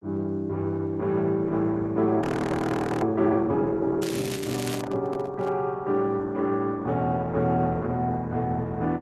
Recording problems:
lossy codec; Opus, log-spectral distance 3 dB, nothing above 12 kHz
frozen audio; at 2 s for 1 s
crackling; at 4 s; loose cable, SNR 10 dB
microphone handling noise; from 4 to 5.5 s; peak -10 dB vs average level

